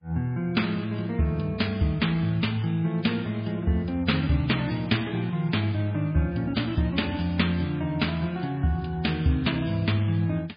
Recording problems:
lossy compression; MP3, log-spectral distance 3 dB, nothing above 4.6 kHz

